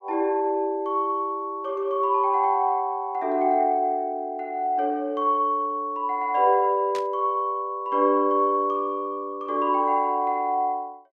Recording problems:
burst of static; at 7 s; peak -9 dB vs average level

